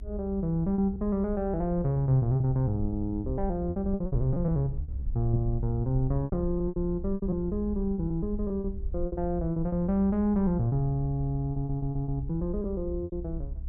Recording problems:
electrical hum; 50 Hz, harmonics up to 400 Hz, SNR 24 dB
low-frequency rumble; below 66 Hz, SNR 9 dB
lost packets; 11% of the sound replaced, filled with repeated pitch periods
audio stuttering; at 12 s

